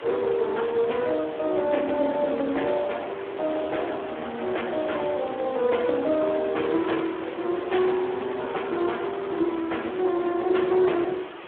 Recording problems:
phone line; 260 Hz to 3.8 kHz, Speex
hiss; SNR 13 dB

